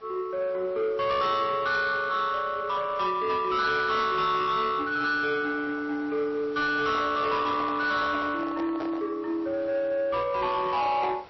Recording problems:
codec artefacts; MP3, log-spectral distance 2 dB, nothing above 5.7 kHz
distortion; soft clipping, signal-to-distortion ratio 10 dB
background hiss; SNR 24 dB
handling noise; from 6.5 to 9 s; peak -6 dB vs average level

